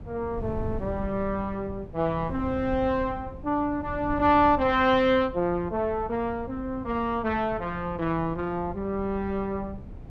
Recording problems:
wind on the microphone; below 160 Hz, SNR 13 dB

